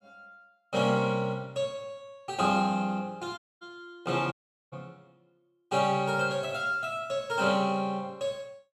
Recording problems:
dropout; at 3.5 s and at 4.5 s

